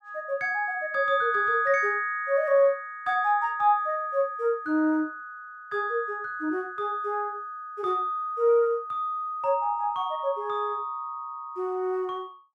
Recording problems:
none

